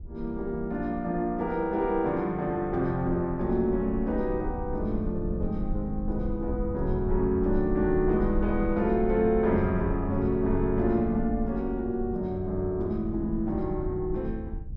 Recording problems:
rumble; below 72 Hz, SNR 9 dB

